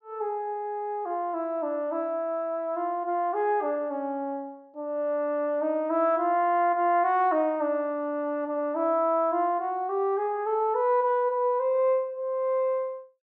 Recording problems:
none

